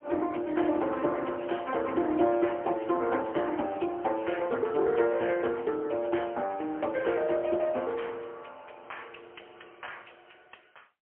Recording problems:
telephone audio; 280 Hz to 3.2 kHz, AMR-NB, then MP3

